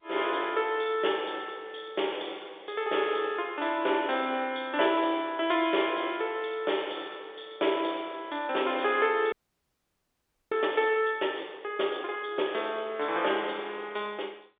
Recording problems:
telephone audio; 320 Hz to 3.6 kHz, G.711
frozen audio; at 9.5 s for 1 s

